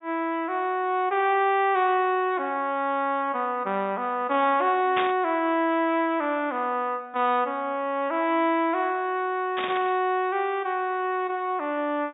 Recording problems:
low-pass filter; nothing above 3.7 kHz
static burst; at 5 s and at 9.5 s; peak 0 dB vs average level

